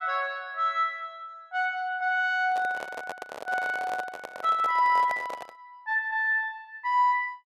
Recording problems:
handling noise; from 2.5 to 5.5 s; peak -5 dB vs average level

